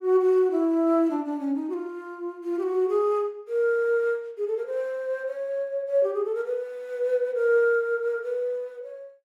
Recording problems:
none

